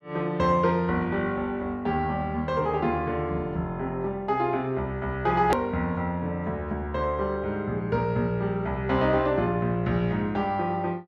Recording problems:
click at an edit; at 5.5 s

